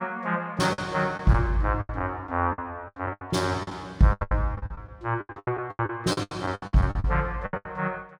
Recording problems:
lost packets; 19% of the sound replaced, filled with the last packet

